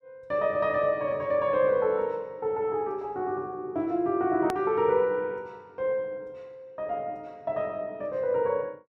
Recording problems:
edit click; at 4.5 s

